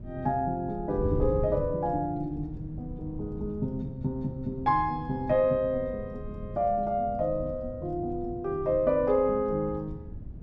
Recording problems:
wind on the microphone; below 150 Hz, SNR 11 dB

